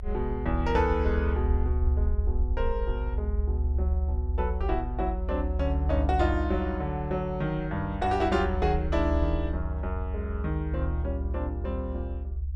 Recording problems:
rumble; below 72 Hz, strongest tone 70 Hz, SNR 0 dB

